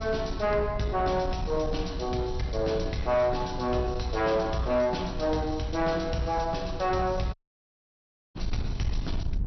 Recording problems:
treble cut off; nothing above 5.9 kHz
distorted audio; soft clipping, signal-to-distortion ratio 11 dB
low-frequency rumble; below 94 Hz, SNR 9 dB
audio cutting out; at 7.5 s for 1 s

